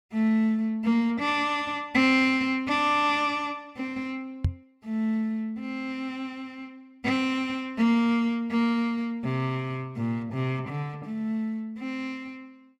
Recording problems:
microphone thump; at 4.5 s; peak +5 dB vs average level

